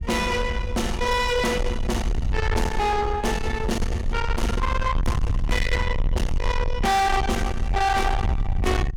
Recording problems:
distortion; soft clipping, signal-to-distortion ratio 6 dB
low-frequency rumble; below 120 Hz, SNR 3 dB

